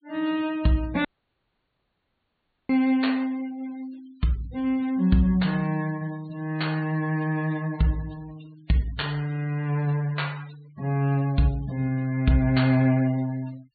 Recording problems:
treble missing; nothing above 4.4 kHz
noise reduction artefacts; signal-to-artefact ratio 24 dB
audio cutting out; at 1 s for 1.5 s

